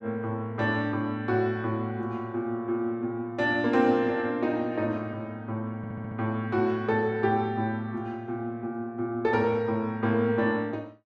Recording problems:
audio stuttering; at 6 s

